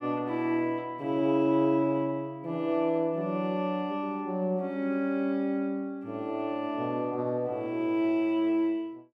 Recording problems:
none

